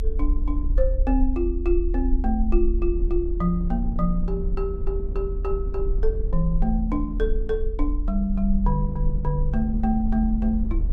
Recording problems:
rumble; below 42 Hz, strongest tone 40 Hz, SNR 1 dB
wind noise; below 220 Hz, SNR 12 dB

